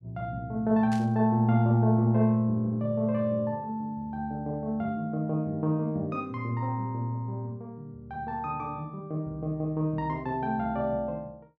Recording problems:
static burst; at 1 s; peak -11 dB vs average level

